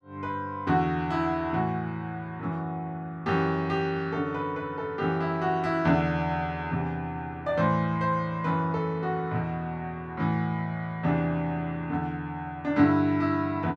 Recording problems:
none

